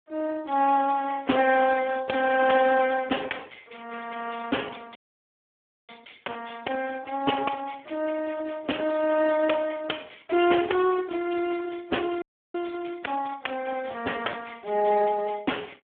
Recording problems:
phone line; 300 Hz to 3.3 kHz, Speex
dropout; at 5 s for 1 s and at 12 s

